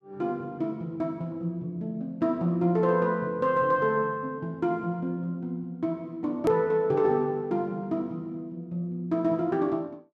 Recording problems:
edit click; at 6.5 s

